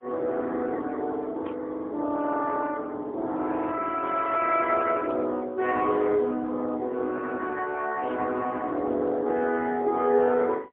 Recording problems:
phone line; 220 Hz to 3.3 kHz, AMR-NB, then MP3
burst of static; at 1.5 s, at 5 s and at 8 s; peak -18 dB vs average level

